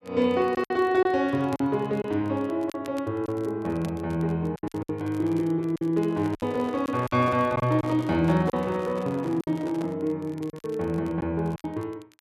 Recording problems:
crackle; vinyl, SNR 28 dB
packet loss; 8% of the sound replaced, filled with silence
handling noise; from 6 to 10 s; peak -6 dB vs average level

